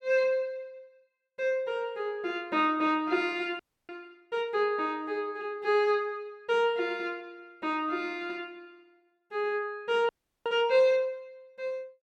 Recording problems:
frozen audio; at 3.5 s and at 10 s

